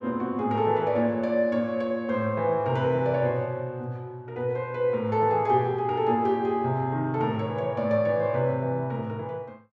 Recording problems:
none

